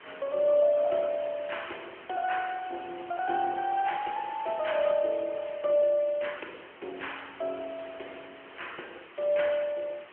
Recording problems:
phone line; 300 Hz to 3.2 kHz, AMR-NB
hiss; SNR 18 dB

